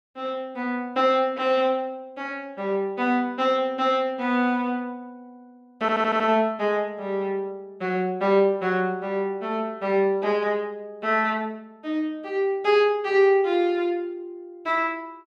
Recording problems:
stutter; at 6 s

